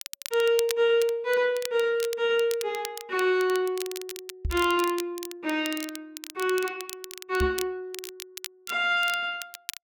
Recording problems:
crackle; vinyl, SNR 13 dB
microphone thump; at 4.5 s and at 7.5 s; peak 0 dB vs average level

